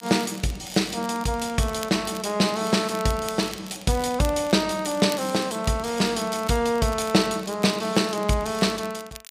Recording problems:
crackling; vinyl, SNR 17 dB

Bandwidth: 15 kHz